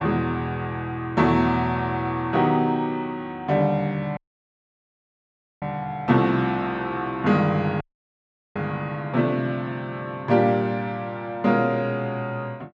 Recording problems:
dropout; at 4 s for 1.5 s and at 8 s for 0.5 s

